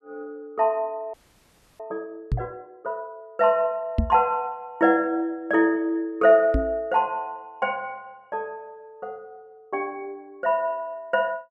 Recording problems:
frozen audio; at 1 s for 0.5 s
microphone bump; at 2.5 s, at 4 s and at 6.5 s; peak +5 dB vs average level

